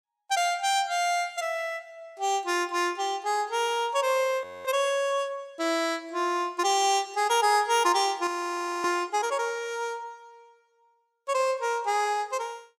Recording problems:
audio freezing; at 4.5 s and at 8.5 s for 0.5 s

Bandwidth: 15.5 kHz